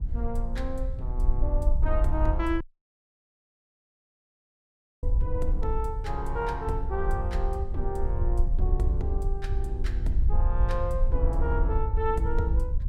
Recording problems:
rumble; below 60 Hz, SNR -3 dB
audio cutting out; at 2.5 s for 2.5 s

